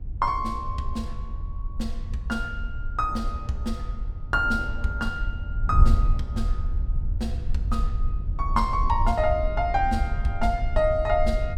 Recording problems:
wind noise; below 68 Hz, SNR 2 dB

